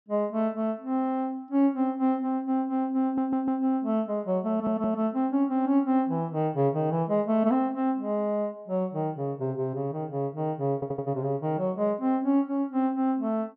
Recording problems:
low-pass filter; nothing above 8 kHz
stutter; at 3 s, at 4.5 s and at 11 s

